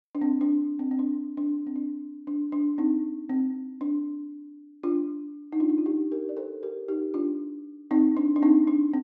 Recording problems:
none

